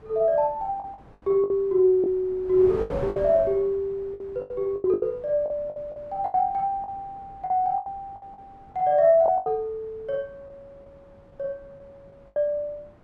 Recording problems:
wind noise; below 610 Hz, SNR 21 dB
packet loss; 12% of the sound replaced, filled with the last packet

